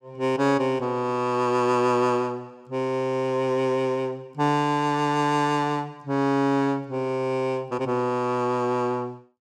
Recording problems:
none

